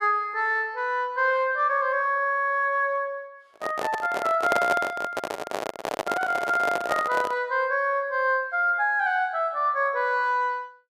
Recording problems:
microphone handling noise; from 3.5 to 7.5 s; peak +3 dB vs average level

